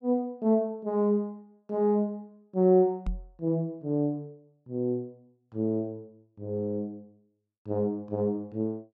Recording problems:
microphone thump; at 3 s; peak -1 dB vs average level

